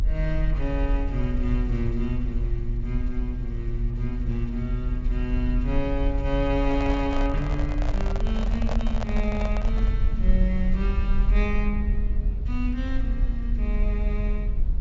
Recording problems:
treble missing; nothing above 7.5 kHz
low-frequency rumble; below 48 Hz, strongest tone 42 Hz, SNR -2 dB
handling noise; from 6.5 to 10 s; peak +2 dB vs average level

